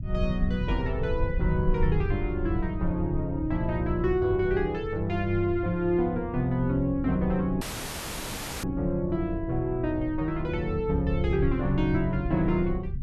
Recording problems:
rumble; below 98 Hz, SNR 6 dB
audio cutting out; at 7.5 s for 1 s; filled with static

